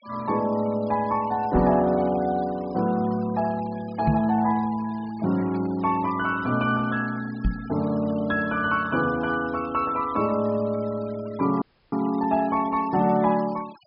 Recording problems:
treble cut off; nothing above 5.5 kHz
denoising artefacts; signal-to-artefact ratio 22 dB
microphone thump; at 1.5 s, at 4 s and at 7.5 s; peak +4 dB vs average level
audio cutting out; at 12 s

